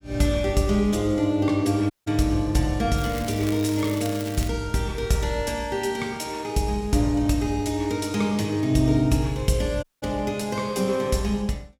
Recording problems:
dropout; at 2 s and at 10 s
crackling; from 3 to 4.5 s; loose cable, SNR 14 dB

